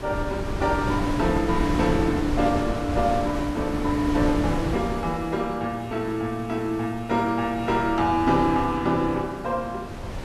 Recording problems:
background hiss; slope -4 dB per octave, SNR 23 dB
wind noise; below 450 Hz, SNR 6 dB

